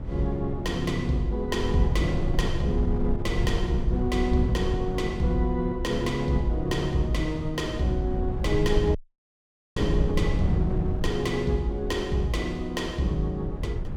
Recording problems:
wind on the microphone; below 110 Hz, SNR 4 dB
audio cutting out; at 9 s for 1 s

